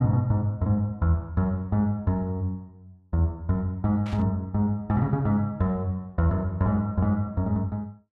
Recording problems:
static burst; at 4 s; peak -13 dB vs average level

